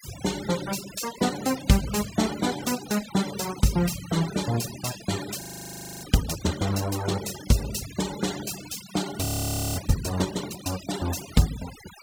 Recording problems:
denoising artefacts; signal-to-artefact ratio 11 dB
audio freezing; at 5.5 s for 0.5 s and at 9.5 s for 0.5 s

